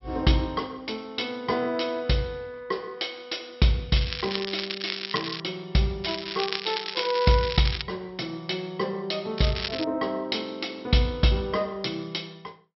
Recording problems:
treble missing; nothing above 5.5 kHz
crackle; from 4 to 5.5 s, from 6 to 8 s and at 9.5 s; loose cable, SNR 5 dB

